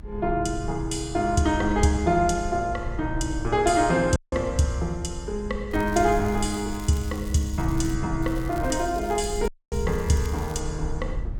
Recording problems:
low-frequency rumble; below 76 Hz, SNR 10 dB
audio cutting out; at 4 s and at 9.5 s
crackle; from 5.5 to 8 s and from 8 to 11 s; loose cable, SNR 21 dB

